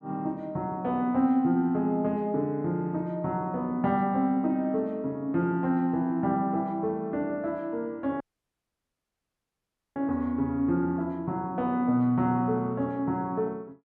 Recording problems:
dropout; at 8 s for 2 s

